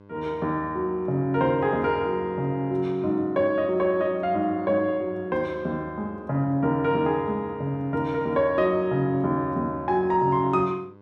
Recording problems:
hum; 50 Hz, harmonics up to 1.6 kHz, SNR 25 dB

